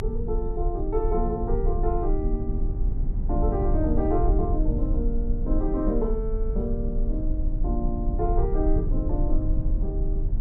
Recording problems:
low-frequency rumble; below 56 Hz, strongest tone 28 Hz, SNR -2 dB

